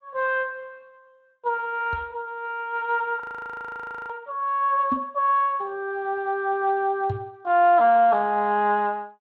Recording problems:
codec artefacts; Speex, log-spectral distance 2 dB
microphone bump; at 2 s, at 5 s and at 7 s; peak -2 dB vs average level
audio freezing; at 3 s for 1 s

